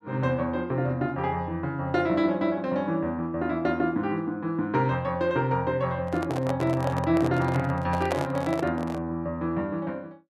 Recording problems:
microphone handling noise; from 6 to 9 s; peak +2 dB vs average level

